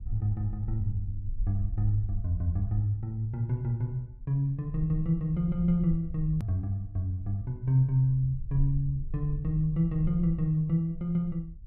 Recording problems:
low-frequency rumble; below 56 Hz, SNR 11 dB
hard cut with a click; at 6.5 s

